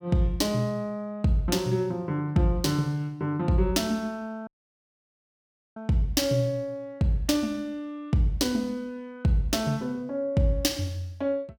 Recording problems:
dropout; at 4.5 s for 1.5 s

